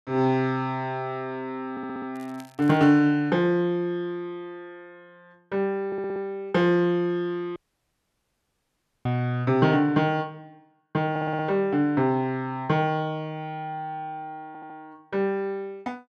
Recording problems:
audio stuttering; 4 times, first at 1.5 s
crackling; at 2 s; loose cable, SNR 28 dB
audio cutting out; at 7.5 s for 1.5 s

